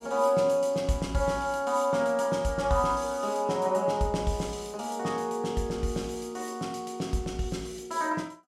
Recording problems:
none

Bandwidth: 16 kHz